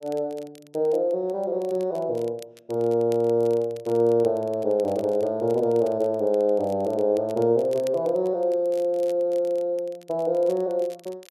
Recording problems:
crackling; vinyl, SNR 28 dB

